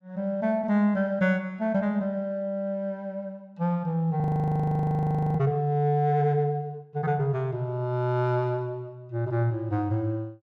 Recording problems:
frozen audio; at 4 s for 1 s

